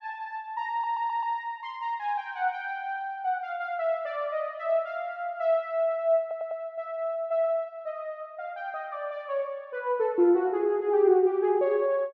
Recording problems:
audio stuttering; at 0.5 s and at 6 s

